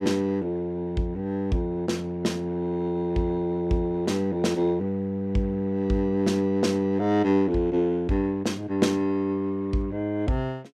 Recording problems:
none

